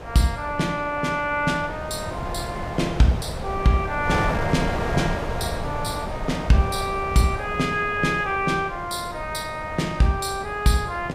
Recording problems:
wind noise; below 750 Hz, SNR 7 dB

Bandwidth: 15.5 kHz